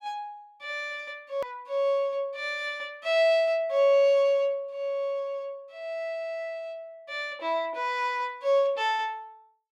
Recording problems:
edit click; at 1.5 s

